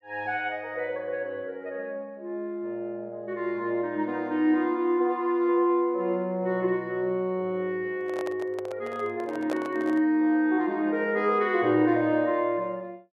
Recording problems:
handling noise; from 8 to 10 s; peak -2 dB vs average level

